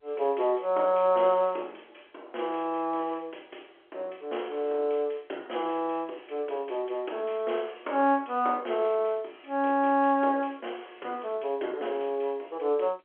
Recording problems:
telephone audio; 300 Hz to 3.7 kHz, G.711

